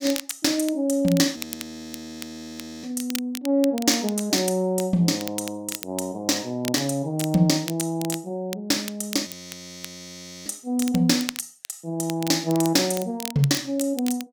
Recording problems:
crackle; vinyl, SNR 13 dB
frozen audio; at 1.5 s for 1.5 s and at 9.5 s for 1 s

